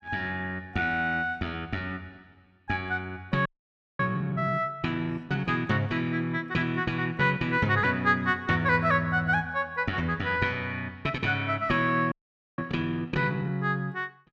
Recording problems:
audio freezing; at 3.5 s for 0.5 s and at 12 s

